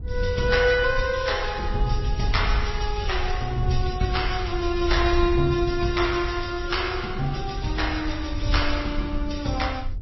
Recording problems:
lossy codec; AAC, then MP3, log-spectral distance 5 dB, nothing above 5.7 kHz
wind noise; below 72 Hz, SNR 6 dB

